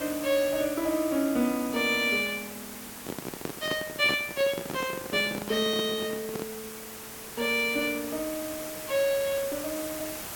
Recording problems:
background hiss; slope -2 dB per octave, SNR 11 dB
handling noise; from 3 to 6.5 s; peak -2 dB vs average level

